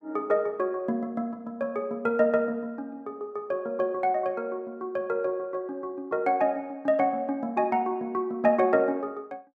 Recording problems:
none

